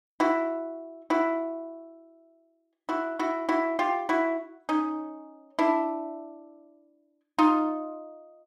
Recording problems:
none

